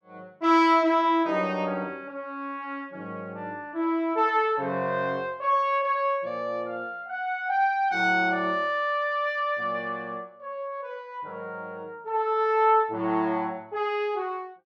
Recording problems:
none

